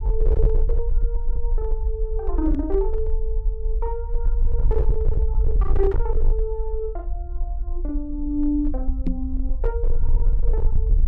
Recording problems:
distortion; hard clipping, signal-to-distortion ratio 11 dB
low-frequency rumble; below 46 Hz, strongest tone 20 Hz, SNR -4 dB
knock on the microphone; at 2.5 s and at 9 s; peak +8 dB vs average level

